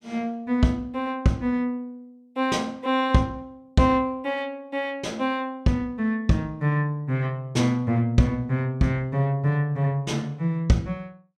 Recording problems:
none

